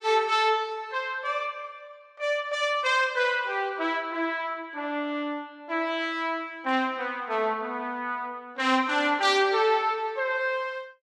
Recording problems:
none

